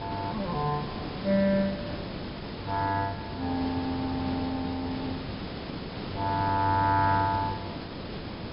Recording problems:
treble cut off; nothing above 5.2 kHz
background hiss; slope -5 dB per octave, SNR 7 dB

